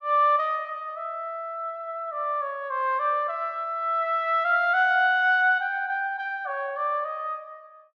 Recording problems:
none

